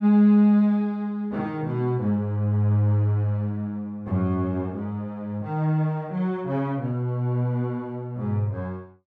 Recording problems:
none

